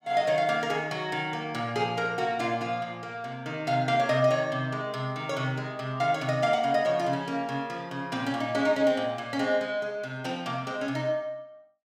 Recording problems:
none

